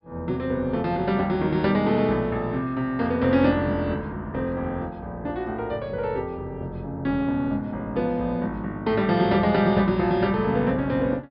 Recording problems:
treble missing; nothing above 5.5 kHz

